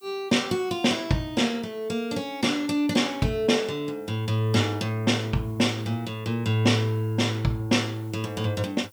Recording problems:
hiss; slope +3 dB per octave, SNR 30 dB

